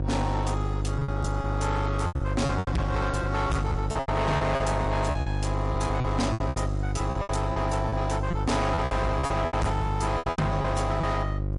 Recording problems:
lossy codec; MP3, log-spectral distance 2 dB, nothing above 11 kHz
distorted audio; hard clipping, signal-to-distortion ratio 6 dB
electrical hum; 50 Hz, harmonics up to 1.3 kHz, SNR 1 dB
packet loss; 13% of the sound replaced, filled with repeated pitch periods

